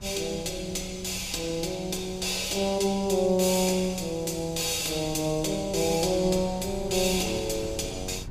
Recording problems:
wind on the microphone; below 170 Hz, SNR 16 dB

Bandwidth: 15.5 kHz